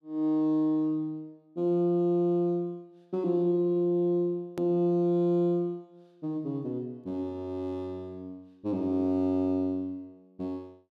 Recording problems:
edit click; at 4.5 s

